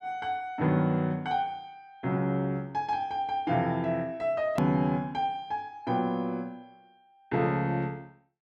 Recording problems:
click at an edit; at 4.5 s

